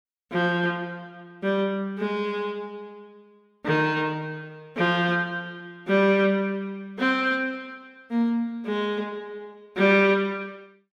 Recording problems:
none

